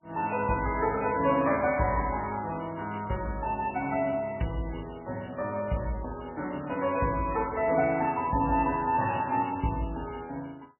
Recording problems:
lossy codec; MP3, log-spectral distance 6 dB, nothing above 2.5 kHz

